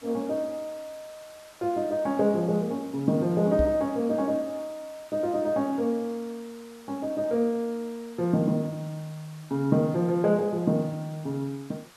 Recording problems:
background hiss; SNR 23 dB
microphone bump; at 3.5 s; peak +1 dB vs average level

